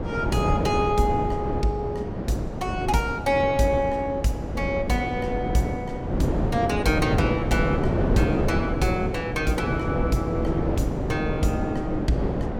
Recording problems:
wind on the microphone; below 440 Hz, SNR 1 dB

